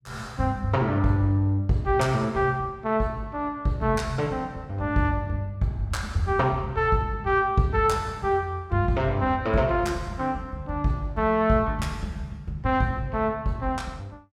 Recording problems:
none

